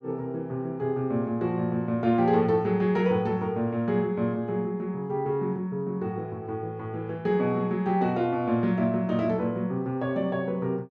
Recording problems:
none

